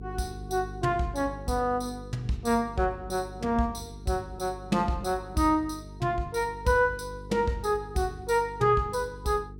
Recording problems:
hum; 50 Hz, harmonics up to 450 Hz, SNR 15 dB

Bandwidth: 16.5 kHz